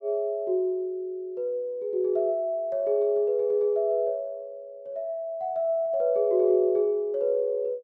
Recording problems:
none

